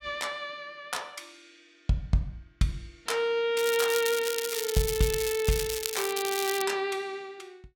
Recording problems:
crackle; from 3.5 to 6.5 s; loose cable, SNR 4 dB

